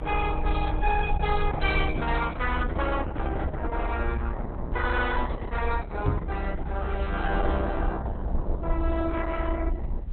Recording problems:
lossy compression; Opus, log-spectral distance 4 dB, nothing above 4 kHz
rumble; below 64 Hz, SNR 1 dB
microphone thump; at 6 s; peak +8 dB vs average level

